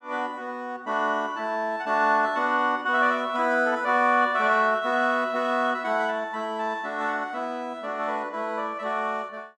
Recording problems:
none

